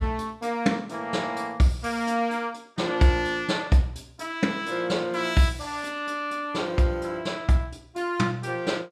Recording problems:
none

